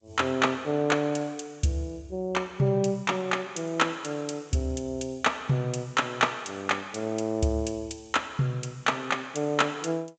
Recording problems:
lossy codec; G.722, log-spectral distance 4 dB, nothing above 7.8 kHz

